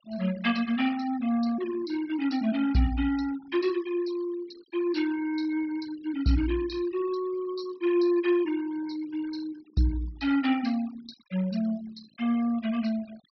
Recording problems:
treble cut off; nothing above 5.5 kHz
noise reduction artefacts; signal-to-artefact ratio 20 dB

